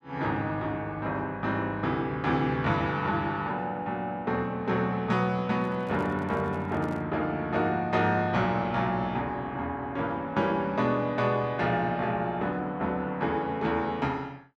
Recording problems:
microphone handling noise; from 5.5 to 7 s; peak -11 dB vs average level

